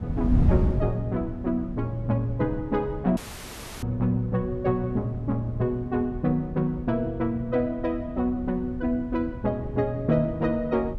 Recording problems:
wind on the microphone; below 150 Hz, SNR 6 dB
dropout; at 3 s for 0.5 s

